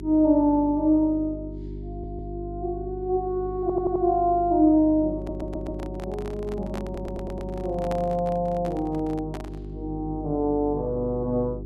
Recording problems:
mains hum; 50 Hz, harmonics up to 400 Hz, SNR 12 dB
stutter; 4 times, first at 2 s
microphone handling noise; from 5 to 10 s; peak -6 dB vs average level

